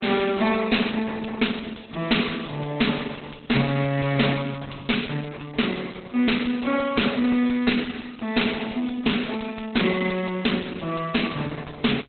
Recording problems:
lossy compression; Opus, log-spectral distance 10 dB, nothing above 4.1 kHz
distorted audio; soft clipping, signal-to-distortion ratio 6 dB

